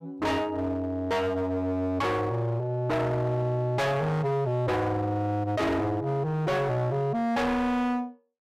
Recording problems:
distorted audio; hard clipping, uneven, signal-to-distortion ratio 7 dB

